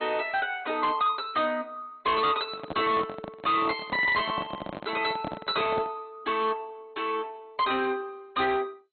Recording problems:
codec artefacts; MP2, log-spectral distance 4 dB, nothing above 4 kHz
distortion; hard clipping, signal-to-distortion ratio 12 dB
microphone handling noise; from 2.5 to 6 s; peak -3 dB vs average level

